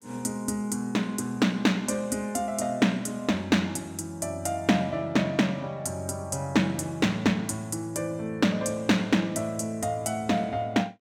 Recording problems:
none

